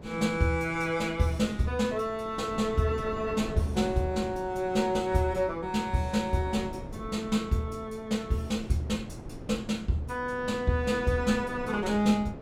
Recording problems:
wind on the microphone; below 390 Hz, SNR 14 dB

